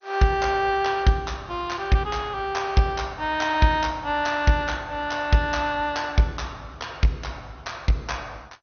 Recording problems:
lossy compression; MP2, log-spectral distance 3 dB, nothing above 6.3 kHz

